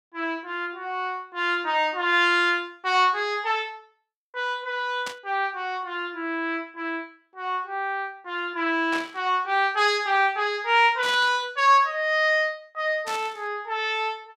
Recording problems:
static burst; 4 times, first at 5 s; peak -6 dB vs average level

